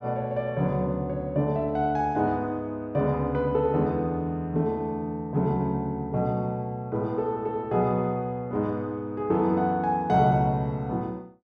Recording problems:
none

